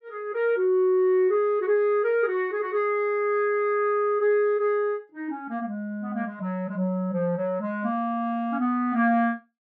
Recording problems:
none

